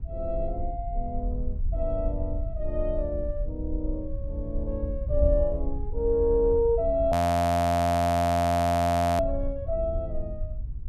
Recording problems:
wind noise; below 86 Hz, SNR 5 dB
frozen audio; at 7 s for 2 s

